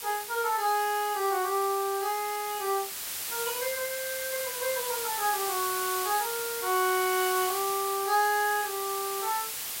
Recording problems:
hiss; slope +2 dB per octave, SNR 4 dB

